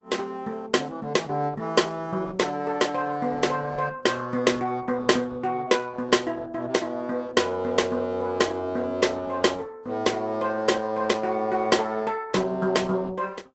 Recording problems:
low-pass filter; nothing above 7.8 kHz
lossy codec; Opus, log-spectral distance 3 dB

